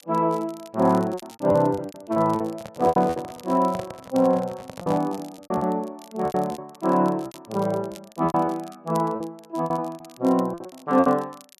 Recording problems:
crackle; vinyl, SNR 24 dB
lost packets; 14% of the sound replaced, filled with repeated pitch periods
handling noise; from 2.5 to 5 s; peak -5 dB vs average level

